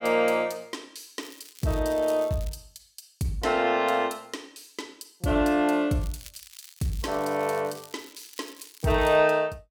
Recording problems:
crackling; from 1 to 2.5 s and from 6 to 9 s; loose cable, SNR 21 dB

